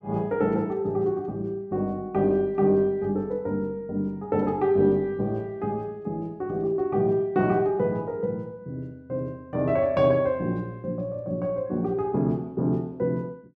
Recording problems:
none

